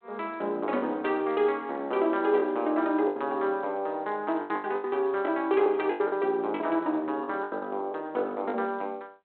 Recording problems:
telephone audio; 240 Hz to 3.5 kHz, G.726
packet loss; 9% of the sound replaced, filled with the last packet

